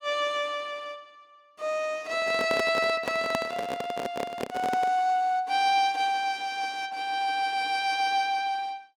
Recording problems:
microphone handling noise; from 2 to 5 s; peak +1 dB vs average level

